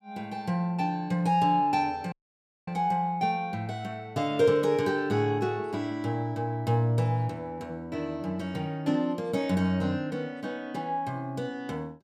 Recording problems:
audio cutting out; at 2 s for 0.5 s

